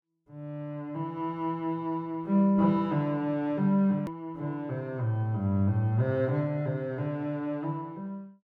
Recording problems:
click at an edit; at 4 s

